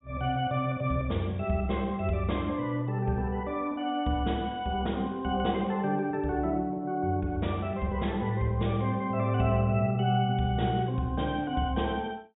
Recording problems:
low-pass filter; nothing above 4 kHz

